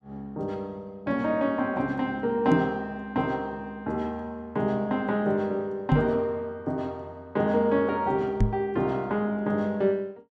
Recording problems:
microphone bump; at 2.5 s, at 6 s and at 8.5 s; peak +8 dB vs average level

